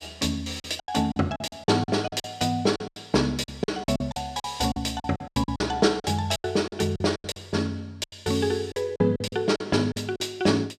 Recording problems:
packet loss; 16% of the sound replaced, filled with silence

